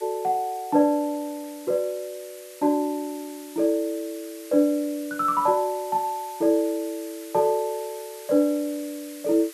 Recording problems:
background hiss; SNR 18 dB

